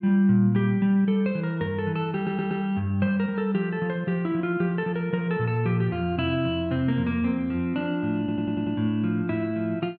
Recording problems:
audio stuttering; at 2 s and at 8 s

